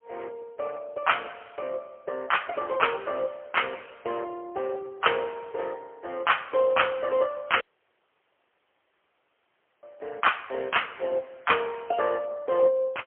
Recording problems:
telephone audio; 300 Hz to 3.3 kHz, AMR-NB, then MP3
dropout; at 7.5 s for 2 s

